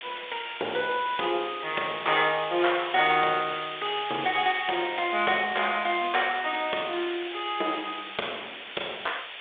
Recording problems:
telephone audio; 300 Hz to 3.6 kHz, G.726
hiss; SNR 9 dB

